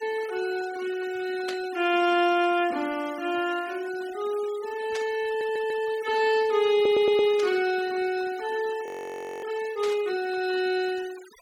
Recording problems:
noise reduction artefacts; signal-to-artefact ratio 19 dB
static burst; 4 times, first at 1.5 s; peak -6 dB vs average level
stutter; at 5.5 s and at 6.5 s
frozen audio; at 9 s for 0.5 s

